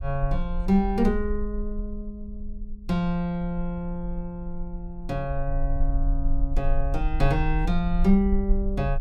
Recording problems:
rumble; below 42 Hz, strongest tone 20 Hz, SNR 4 dB

